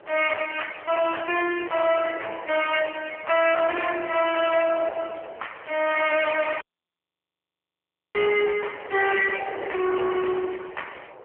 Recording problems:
phone line; 340 Hz to 3.2 kHz, AMR-NB
distorted audio; hard clipping, signal-to-distortion ratio 7 dB
wind noise; below 1.2 kHz, SNR 17 dB
audio cutting out; at 6.5 s for 1.5 s

